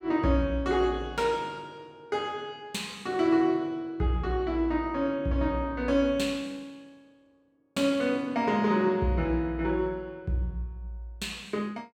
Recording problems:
none

